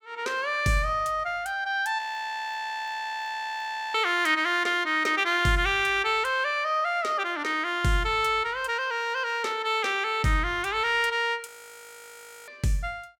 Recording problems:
frozen audio; at 2 s for 2 s and at 11 s for 1 s

